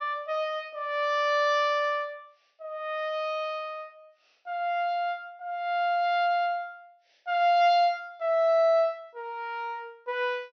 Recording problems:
treble cut off; nothing above 6.1 kHz

